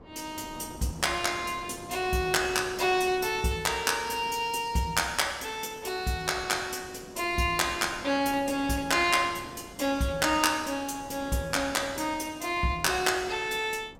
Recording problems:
wind on the microphone; below 650 Hz, SNR 19 dB

